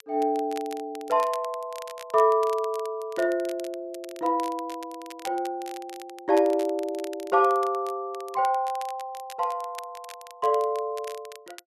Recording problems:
crackling; vinyl, SNR 19 dB

